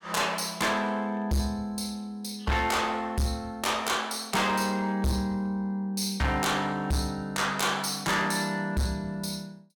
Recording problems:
distortion; hard clipping, signal-to-distortion ratio 7 dB

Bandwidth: 17.5 kHz